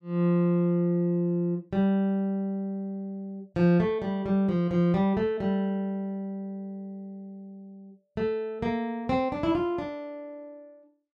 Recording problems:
none

